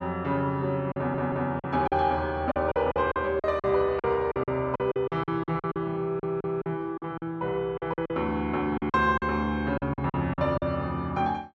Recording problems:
lost packets; 12% of the sound replaced, filled with silence
stutter; at 1 s and at 6 s

